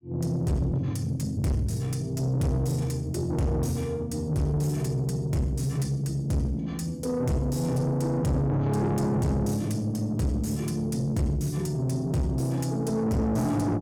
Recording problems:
distortion; soft clipping, signal-to-distortion ratio 7 dB

